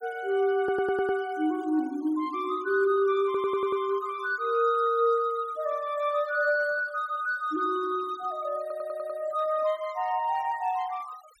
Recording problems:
noise reduction artefacts; signal-to-artefact ratio 26 dB
stutter; at 0.5 s, at 3.5 s and at 8.5 s

